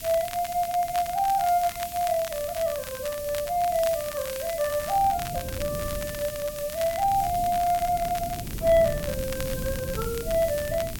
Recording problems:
background hiss; SNR 12 dB
wind noise; below 200 Hz, SNR 13 dB
crackling; vinyl, SNR 14 dB

